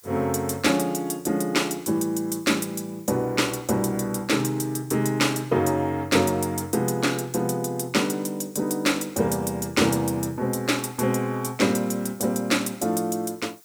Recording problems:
background hiss; SNR 27 dB

